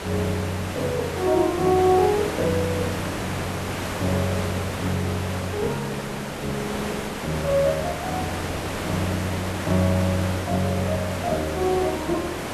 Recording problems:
background hiss; slope -5 dB per octave, SNR 4 dB

